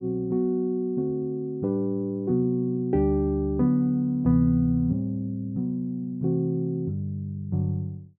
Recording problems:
none

